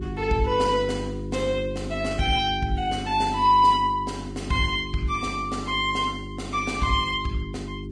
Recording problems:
lossy codec; Vorbis, log-spectral distance 3 dB
electrical hum; 50 Hz, harmonics up to 400 Hz, SNR 10 dB

